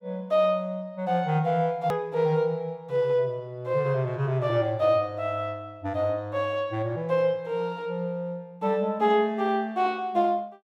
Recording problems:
edit click; at 2 s

